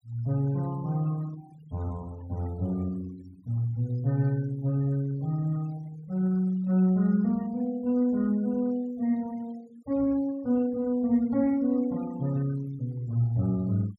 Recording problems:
denoising artefacts; signal-to-artefact ratio 25 dB

